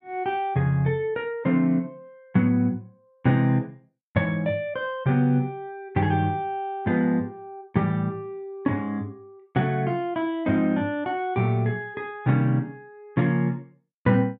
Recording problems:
none

